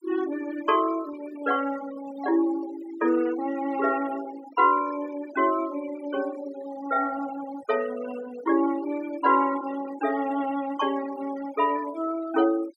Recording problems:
noise reduction artefacts; signal-to-artefact ratio 16 dB

